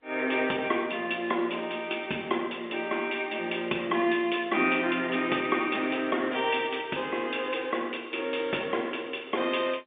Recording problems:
phone line; 190 Hz to 3.6 kHz, G.711

